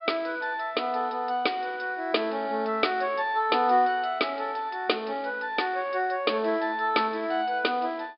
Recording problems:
low-pass filter; nothing above 5.1 kHz

